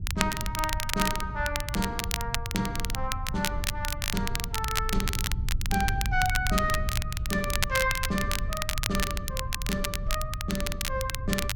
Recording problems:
rumble; below 94 Hz, SNR 3 dB
crackling; vinyl, SNR 1 dB

